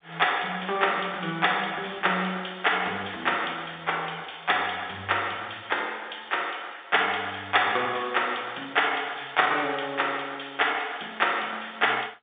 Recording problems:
phone line; 260 Hz to 3.6 kHz, G.711

